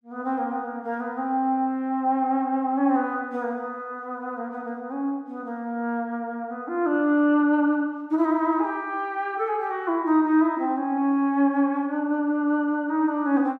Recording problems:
none

